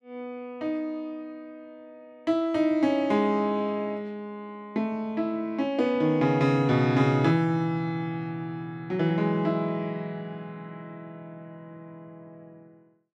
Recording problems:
none

